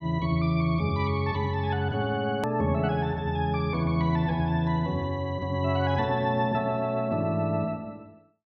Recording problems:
edit click; at 2.5 s

